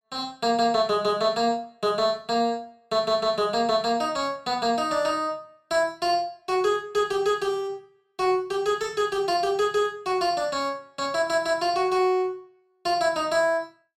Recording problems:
none

